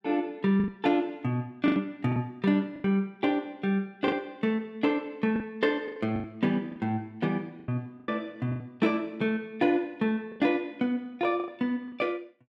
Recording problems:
lost packets; 8% of the sound replaced, filled with the last packet

